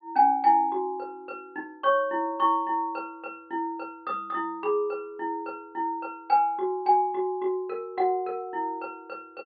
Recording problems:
treble cut off; nothing above 4.8 kHz

